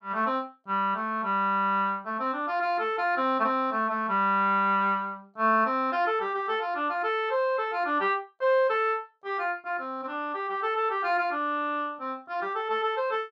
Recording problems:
none

